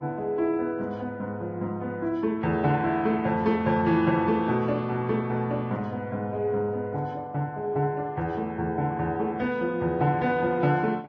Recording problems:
codec artefacts; Vorbis, log-spectral distance 2 dB

